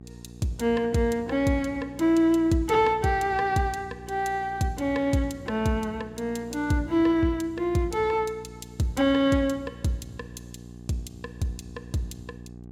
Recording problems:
hum; 60 Hz, harmonics up to 780 Hz, SNR 18 dB

